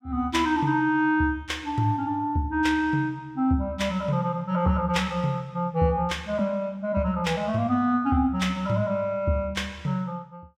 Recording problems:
none

